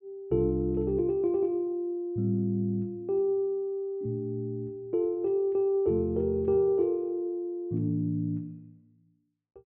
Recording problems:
low-pass filter; nothing above 5.5 kHz

